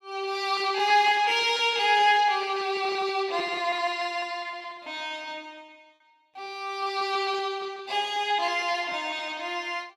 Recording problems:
lost packets; 12% of the sound replaced, filled with repeated pitch periods

